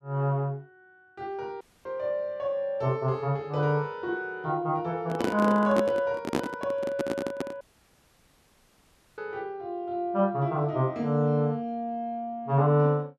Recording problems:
audio cutting out; at 1.5 s and at 7.5 s for 1.5 s
microphone handling noise; from 5 to 7.5 s; peak +5 dB vs average level

